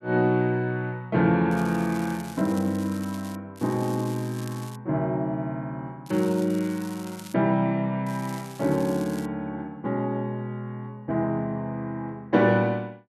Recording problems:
crackling; 4 times, first at 1.5 s; loose cable, SNR 19 dB

